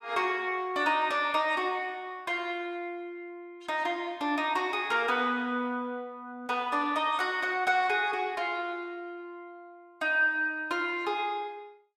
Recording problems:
none

